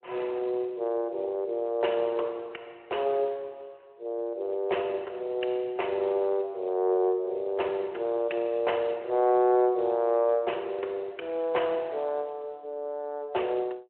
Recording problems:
telephone audio; 320 Hz to 3.3 kHz, Speex

